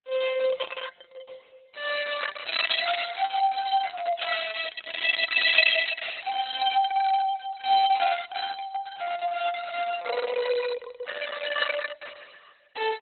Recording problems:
codec artefacts; Opus, log-spectral distance 6 dB, nothing above 4 kHz

